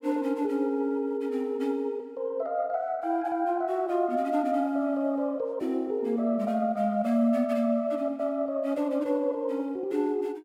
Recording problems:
none

